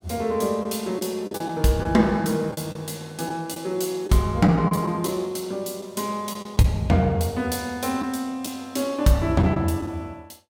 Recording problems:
lost packets; 5% of the sound replaced, filled with the last packet

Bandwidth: 17 kHz